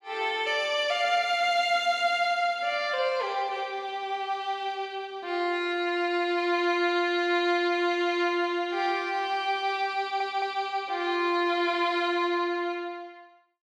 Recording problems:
audio stuttering; at 10 s

